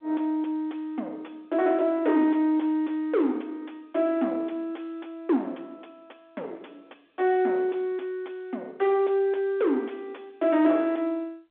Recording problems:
telephone audio; 240 Hz to 3.6 kHz, G.711
distorted audio; soft clipping, signal-to-distortion ratio 10 dB

